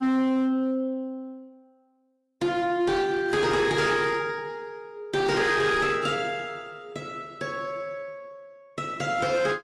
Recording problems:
codec artefacts; AAC, log-spectral distance 2 dB, nothing above 11.3 kHz
distortion; hard clipping, signal-to-distortion ratio 11 dB

